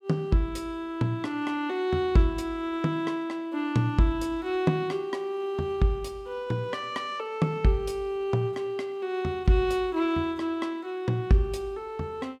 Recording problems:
none

